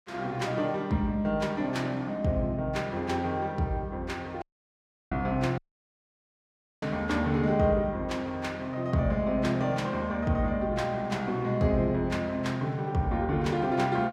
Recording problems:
audio cutting out; at 4.5 s for 0.5 s and at 5.5 s for 1 s

